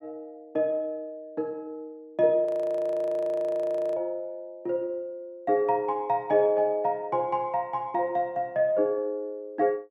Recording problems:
audio freezing; at 2.5 s for 1.5 s

